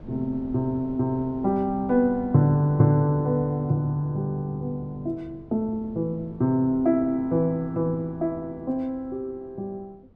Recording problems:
wind noise; below 270 Hz, SNR 22 dB

